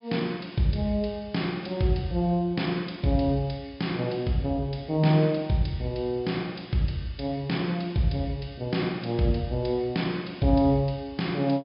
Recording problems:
treble missing; nothing above 5.5 kHz

